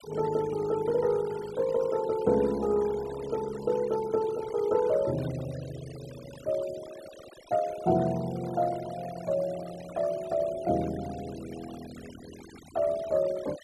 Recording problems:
noise reduction artefacts; signal-to-artefact ratio 19 dB

